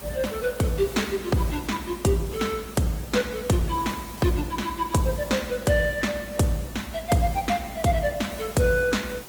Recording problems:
codec artefacts; Opus, log-spectral distance 5 dB, nothing above 19 kHz
hiss; slope -4 dB per octave, SNR 16 dB

